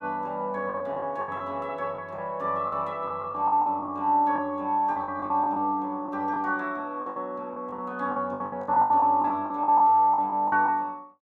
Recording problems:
lost packets; 13% of the sound replaced, filled with the last packet

